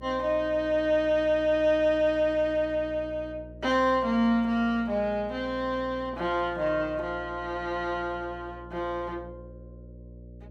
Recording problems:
hum; 60 Hz, harmonics up to 600 Hz, SNR 19 dB

